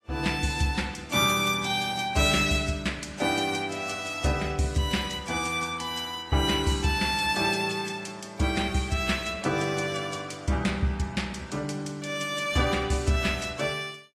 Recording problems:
codec artefacts; AAC, log-spectral distance 4 dB, nothing above 12.3 kHz

